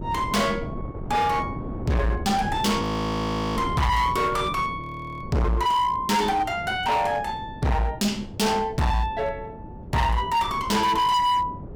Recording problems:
distortion; hard clipping, signal-to-distortion ratio 6 dB
wind noise; below 330 Hz, SNR 12 dB
frozen audio; at 3 s for 1 s and at 5 s

